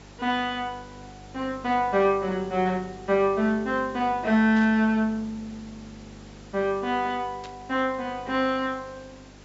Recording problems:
treble cut off; nothing above 8 kHz
hum; 50 Hz, harmonics up to 550 Hz, SNR 22 dB
background hiss; slope -3 dB per octave, SNR 25 dB
burst of static; at 4.5 s and at 7.5 s; peak -13 dB vs average level

